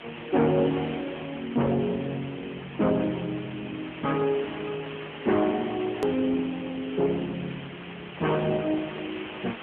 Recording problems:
phone line; 150 Hz to 3.3 kHz, AMR-NB
distorted audio; soft clipping, signal-to-distortion ratio 11 dB
hiss; SNR 12 dB
edit click; at 6 s

